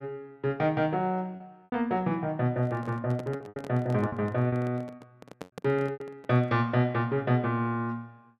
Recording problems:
packet loss; 6% of the sound replaced, filled with repeated pitch periods
handling noise; from 2.5 to 6.5 s; peak -7 dB vs average level

